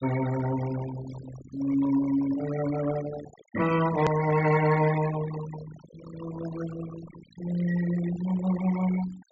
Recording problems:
treble missing; nothing above 7.5 kHz
denoising artefacts; signal-to-artefact ratio 12 dB
click at an edit; at 4 s

